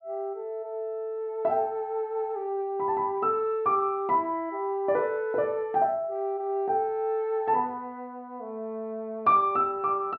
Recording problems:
treble cut off; nothing above 5.5 kHz

